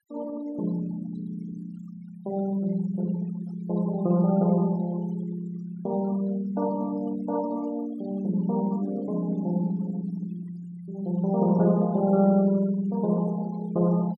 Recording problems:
denoising artefacts; signal-to-artefact ratio 22 dB

